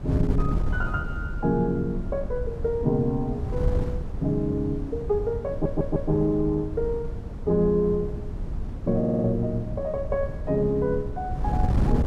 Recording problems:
wind on the microphone; below 130 Hz, SNR 5 dB
stutter; at 5.5 s and at 9 s

